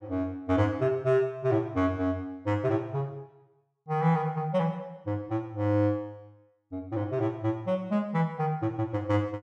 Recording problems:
none

